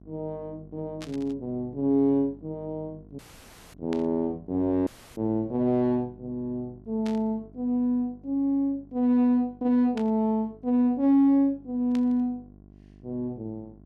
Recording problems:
hum; 50 Hz, harmonics up to 750 Hz, SNR 25 dB
static burst; 5 times, first at 1 s; peak -10 dB vs average level
dropout; at 3 s for 0.5 s and at 5 s

